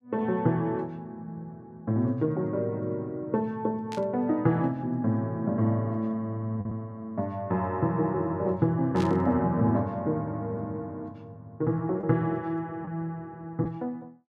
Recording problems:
lost packets; 0.7% of the sound replaced, filled with the last packet
static burst; at 4 s and at 9 s; peak -7 dB vs average level

